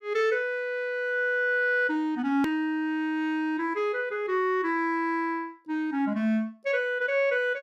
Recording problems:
click at an edit; at 2.5 s

